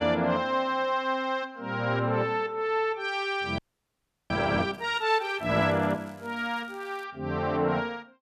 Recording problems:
audio freezing; at 3.5 s for 0.5 s
crackle; from 4.5 to 7 s; loose cable, SNR 29 dB

